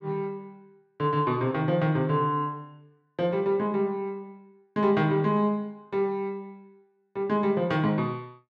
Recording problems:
none

